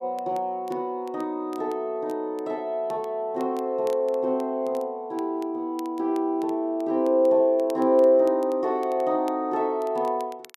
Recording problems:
crackle; vinyl, SNR 29 dB

